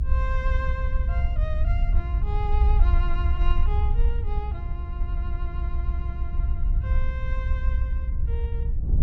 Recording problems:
rumble; below 62 Hz, SNR -11 dB
wind on the microphone; below 100 Hz, SNR -1 dB

